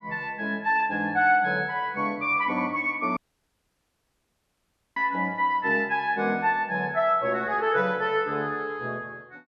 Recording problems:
dropout; at 3 s for 2 s

